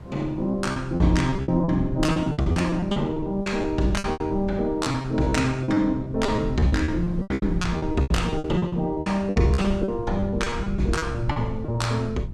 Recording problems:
low-frequency rumble; below 120 Hz, SNR 11 dB
wind on the microphone; below 490 Hz, SNR 24 dB
packet loss; 19% of the sound replaced, filled with repeated pitch periods

